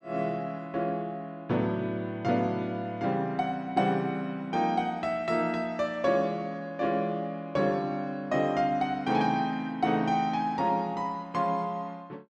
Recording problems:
none

